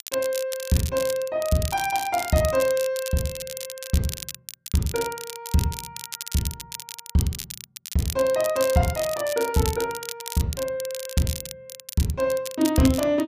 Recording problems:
crackling; vinyl, SNR 9 dB

